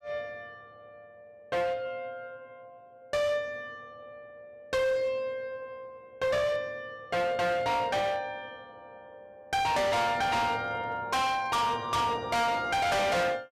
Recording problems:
distortion; hard clipping, signal-to-distortion ratio 6 dB

